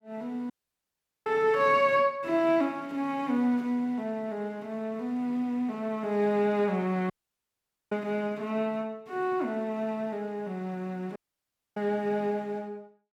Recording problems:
dropout; at 0.5 s for 1 s, at 7 s for 1 s and at 11 s for 0.5 s

